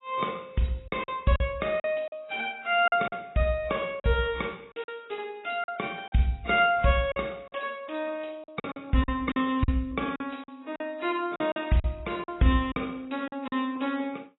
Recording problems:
codec artefacts; AAC, log-spectral distance 4 dB, nothing above 3.4 kHz
packet loss; 8% of the sound replaced, filled with silence

